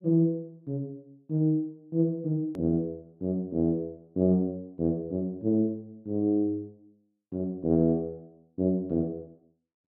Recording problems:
click at an edit; at 2.5 s

